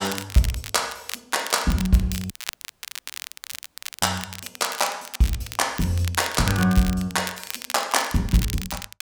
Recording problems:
crackle; vinyl, SNR 10 dB
audio cutting out; at 2.5 s for 1.5 s

